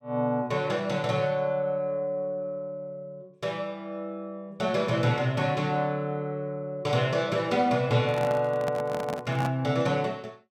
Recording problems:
handling noise; from 8 to 9.5 s; peak -2 dB vs average level

